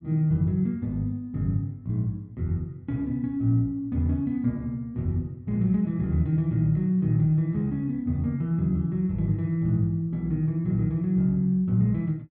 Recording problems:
none

